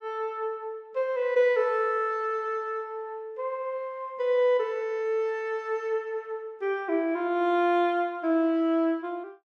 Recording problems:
none

